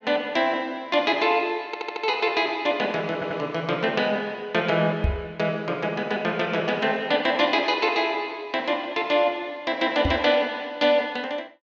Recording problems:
audio stuttering; at 1.5 s and at 3 s
knock on the microphone; at 5 s and at 10 s; peak +3 dB vs average level

